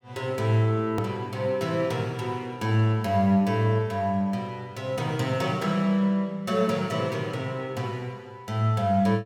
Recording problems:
edit click; at 1 s

